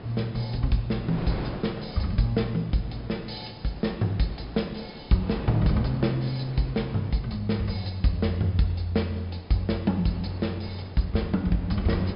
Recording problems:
treble missing; nothing above 5.5 kHz
wind on the microphone; below 600 Hz, SNR 13 dB

